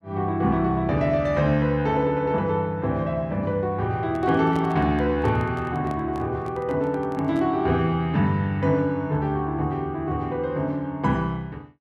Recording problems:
microphone handling noise; from 4 to 7.5 s; peak -8 dB vs average level

